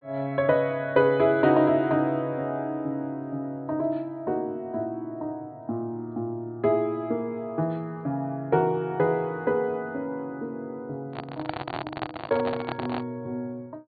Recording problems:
low-pass filter; nothing above 4.6 kHz
microphone handling noise; from 11 to 13 s; peak 0 dB vs average level

